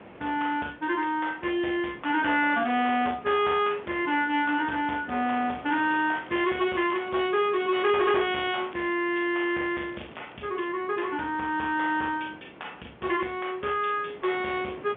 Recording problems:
telephone audio; 260 Hz to 3.5 kHz, G.711
distortion; soft clipping, signal-to-distortion ratio 12 dB
wind on the microphone; below 1.4 kHz, SNR 20 dB
crackle; from 6 to 9 s and at 9.5 s; loose cable, SNR 25 dB

